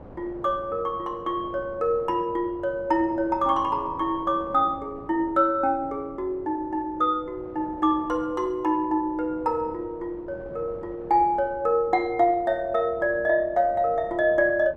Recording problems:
wind noise; below 620 Hz, SNR 20 dB

